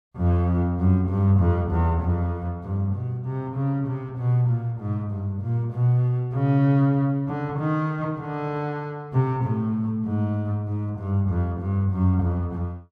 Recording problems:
none

